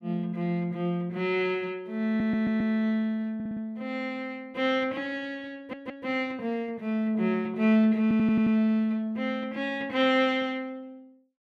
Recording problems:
stutter; 4 times, first at 2 s

